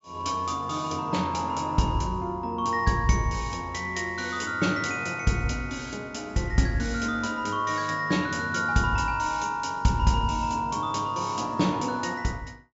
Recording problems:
treble missing; nothing above 8 kHz

